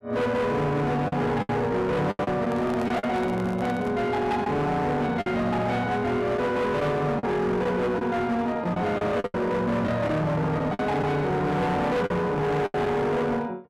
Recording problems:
distortion; hard clipping, signal-to-distortion ratio 8 dB
packet loss; 6% of the sound replaced, filled with the last packet
handling noise; from 2.5 to 4 s; peak -6 dB vs average level

